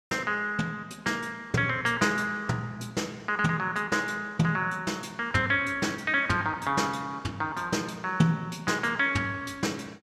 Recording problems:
none

